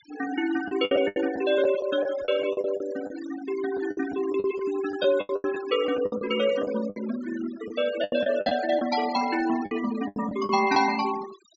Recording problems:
low-pass filter; nothing above 8 kHz
denoising artefacts; signal-to-artefact ratio 13 dB
packet loss; 12% of the sound replaced, filled with the last packet

